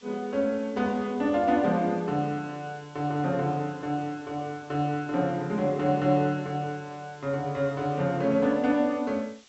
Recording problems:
low-pass filter; nothing above 7.8 kHz
hiss; slope +1 dB per octave, SNR 27 dB

